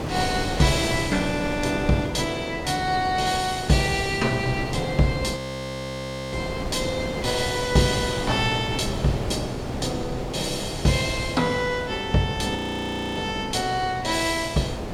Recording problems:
wind on the microphone; below 670 Hz, SNR 8 dB
audio freezing; at 5.5 s for 1 s and at 13 s for 0.5 s

